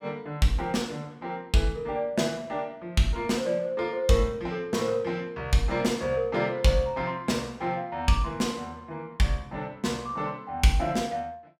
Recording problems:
none

